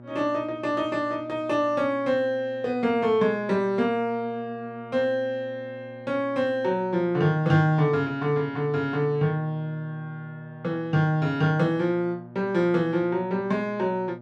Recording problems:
electrical hum; 60 Hz, harmonics up to 1.2 kHz, SNR 20 dB

